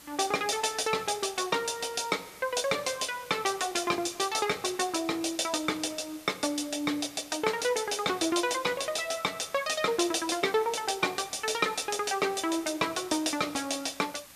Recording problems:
background hiss; slope 0 dB per octave, SNR 19 dB

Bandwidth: 14.5 kHz